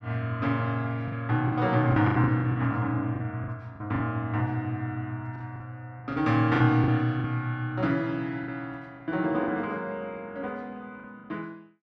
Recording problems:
lost packets; 8% of the sound replaced, filled with the last packet

